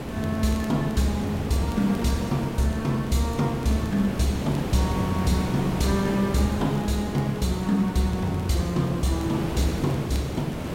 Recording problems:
hiss; slope -7 dB per octave, SNR 5 dB
crackle; vinyl, SNR 27 dB

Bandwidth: 16 kHz